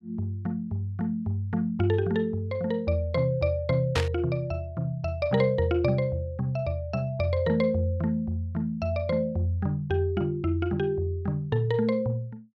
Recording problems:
burst of static; at 4 s; peak +1 dB vs average level

